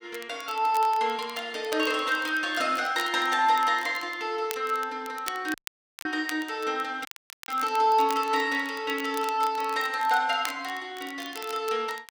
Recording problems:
crackle; vinyl, SNR 17 dB
audio cutting out; at 5.5 s for 0.5 s and at 7 s

